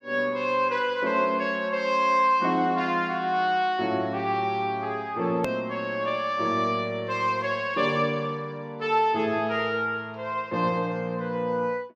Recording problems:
click at an edit; at 5.5 s

